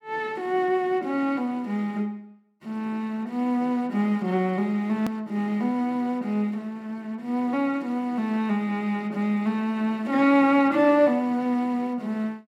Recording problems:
edit click; at 5 s

